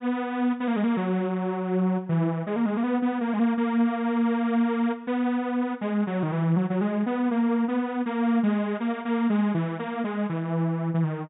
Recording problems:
treble cut off; nothing above 4 kHz

